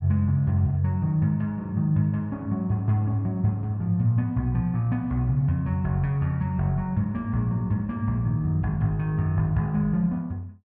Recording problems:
none

